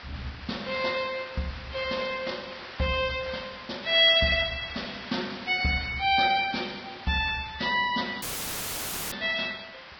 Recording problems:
lossy compression; Vorbis, log-spectral distance 9 dB
hiss; SNR 16 dB
dropout; at 8 s for 1 s; filled with static

